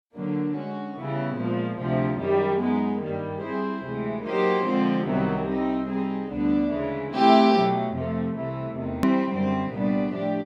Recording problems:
click at an edit; at 9 s

